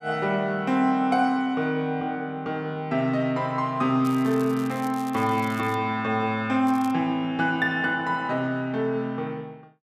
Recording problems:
crackling; from 4 to 5.5 s and at 6.5 s; loose cable, SNR 22 dB

